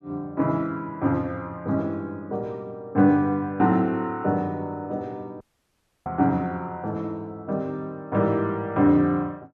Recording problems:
dropout; at 5.5 s for 0.5 s

